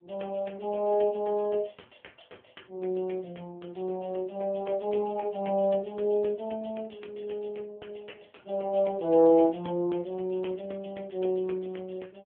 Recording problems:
phone line; 170 Hz to 3.4 kHz, AMR-NB

